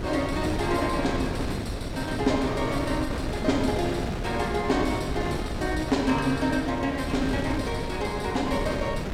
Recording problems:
wind noise; below 500 Hz, SNR 4 dB

